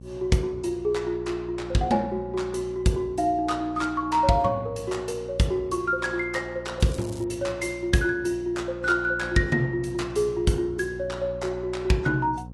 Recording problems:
lossy codec; AAC, log-spectral distance 2 dB, nothing above 11.6 kHz
hum; 60 Hz, harmonics up to 540 Hz, SNR 16 dB
crackle; at 7 s; loose cable, SNR 19 dB

